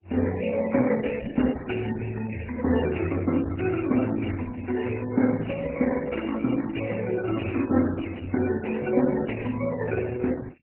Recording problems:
codec artefacts; MP3, then Opus, log-spectral distance 8 dB, nothing above 2.8 kHz

